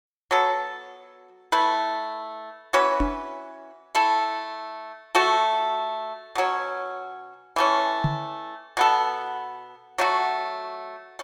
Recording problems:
microphone thump; at 3 s and at 8 s; peak +4 dB vs average level

